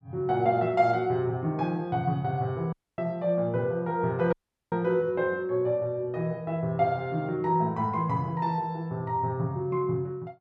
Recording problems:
dropout; at 2.5 s and at 4.5 s

